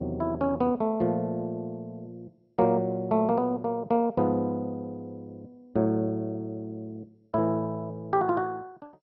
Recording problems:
lossy codec; MP2, log-spectral distance 2 dB, nothing above 4.8 kHz

